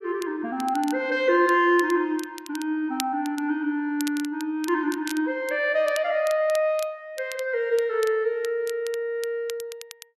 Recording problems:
crackling; vinyl, SNR 17 dB

